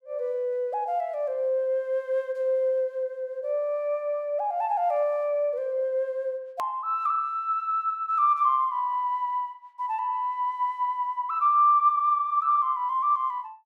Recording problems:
click at an edit; at 6.5 s

